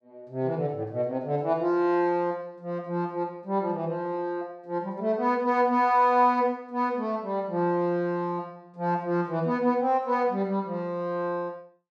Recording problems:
none

